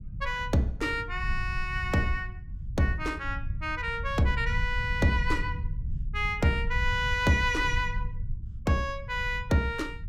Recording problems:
rumble; below 86 Hz, SNR 7 dB

